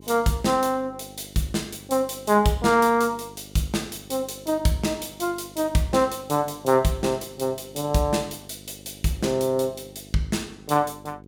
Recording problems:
electrical hum; 50 Hz, harmonics up to 600 Hz, SNR 22 dB

